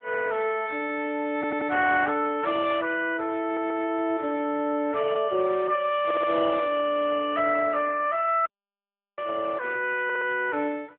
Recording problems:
telephone audio; 300 Hz to 3.5 kHz, AMR-NB
audio stuttering; 4 times, first at 1.5 s
audio cutting out; at 8.5 s for 0.5 s

